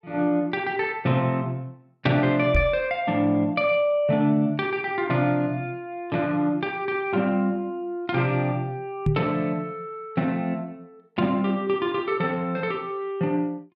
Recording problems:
microphone thump; at 2.5 s and at 9 s; peak +5 dB vs average level

